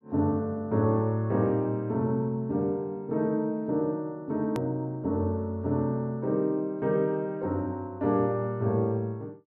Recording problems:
hard cut with a click; at 4.5 s

